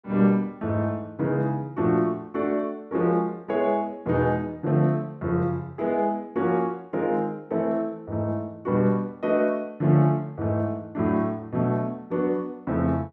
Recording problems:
none

